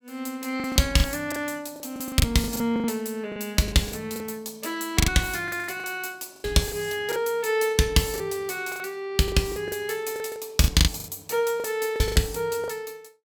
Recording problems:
lost packets; 13% of the sound replaced, filled with the last packet

